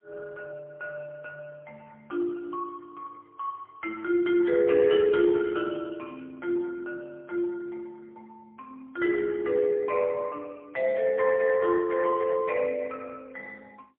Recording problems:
phone line; 260 Hz to 2.7 kHz, AMR-NB, then MP3

